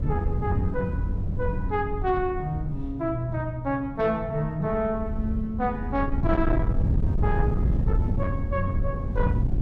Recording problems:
distorted audio; soft clipping, signal-to-distortion ratio 12 dB
wind noise; below 120 Hz, SNR 0 dB

